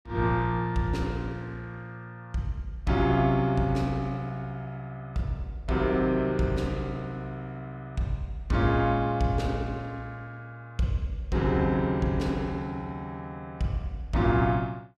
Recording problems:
none

